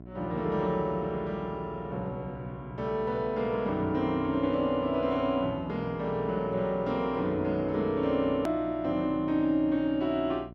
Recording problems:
hum; 60 Hz, harmonics up to 1.1 kHz, SNR 16 dB
click at an edit; at 8.5 s

